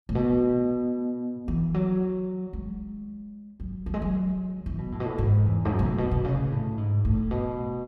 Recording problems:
none

